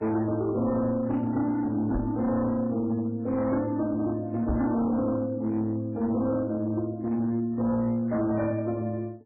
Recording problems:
lossy codec; MP3, log-spectral distance 2 dB, nothing above 7.8 kHz
distortion; hard clipping, signal-to-distortion ratio 10 dB
knock on the microphone; at 2 s and at 4.5 s; peak +2 dB vs average level

